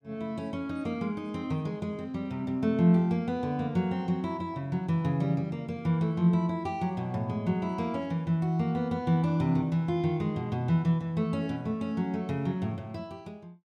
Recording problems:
none

